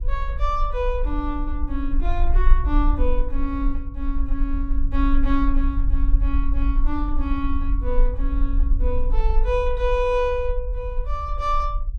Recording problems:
low-frequency rumble; below 44 Hz, strongest tone 20 Hz, SNR -2 dB

